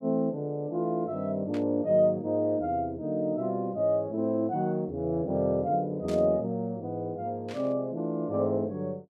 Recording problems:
static burst; at 1.5 s, at 6 s and at 7.5 s; peak -12 dB vs average level

